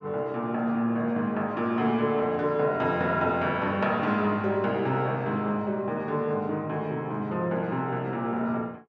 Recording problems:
none

